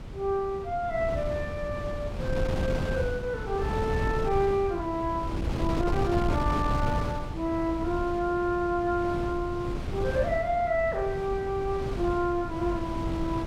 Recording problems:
wind on the microphone; below 250 Hz, SNR 4 dB

